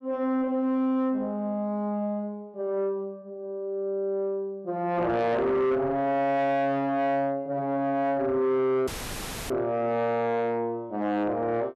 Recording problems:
distorted audio; soft clipping, signal-to-distortion ratio 10 dB
dropout; at 9 s for 0.5 s; filled with static

